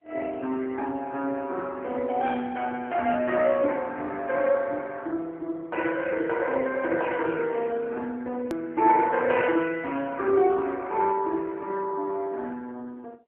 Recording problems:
phone line; 190 Hz to 3.5 kHz, AMR-NB
edit click; at 8.5 s

